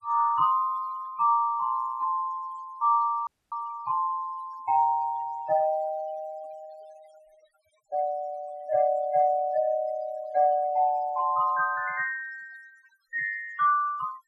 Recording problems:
denoising artefacts; signal-to-artefact ratio 26 dB
audio cutting out; at 3.5 s

